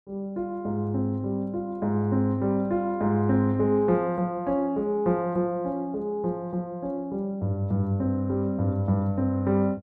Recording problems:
none

